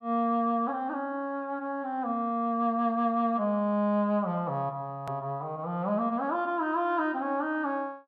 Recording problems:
click at an edit; at 5 s

